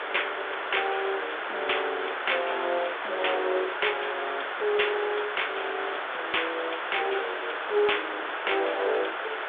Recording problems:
telephone audio; 340 Hz to 3.6 kHz, G.726
hiss; SNR 2 dB

